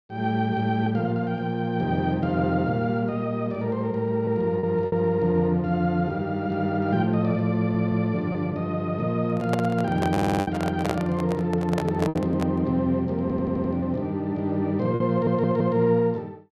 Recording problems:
packet loss; 2% of the sound replaced, filled with repeated pitch periods
audio stuttering; 4 times, first at 7.5 s
microphone handling noise; from 9.5 to 13 s; peak +1 dB vs average level

